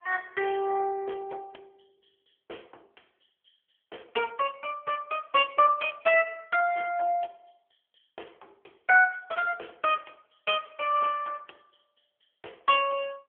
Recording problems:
telephone audio; 340 Hz to 3.3 kHz, AMR-NB

